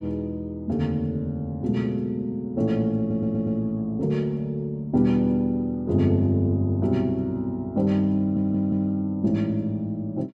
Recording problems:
stutter; at 3 s and at 8 s

